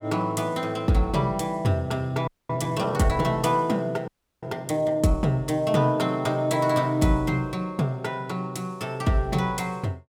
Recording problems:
audio freezing; at 2.5 s and at 4 s

